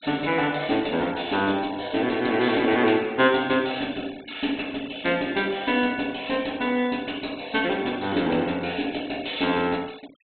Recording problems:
low-pass filter; nothing above 4 kHz
denoising artefacts; signal-to-artefact ratio 22 dB

